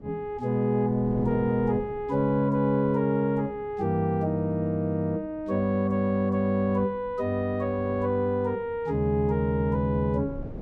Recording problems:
wind on the microphone; below 320 Hz, SNR 19 dB

